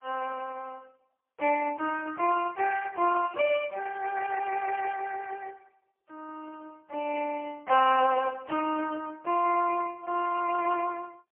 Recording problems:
phone line; 300 Hz to 2.8 kHz, AMR-NB, then MP3

